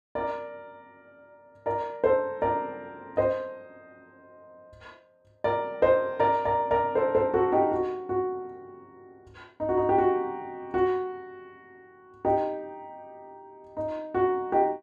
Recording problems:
none

